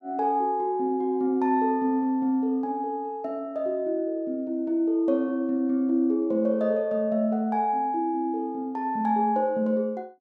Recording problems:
none

